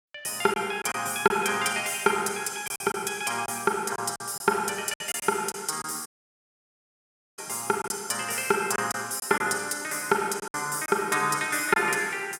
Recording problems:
packet loss; 6% of the sound replaced, filled with silence
dropout; at 6 s for 1.5 s

